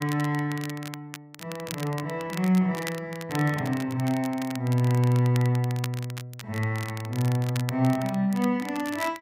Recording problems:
crackling; vinyl, SNR 15 dB

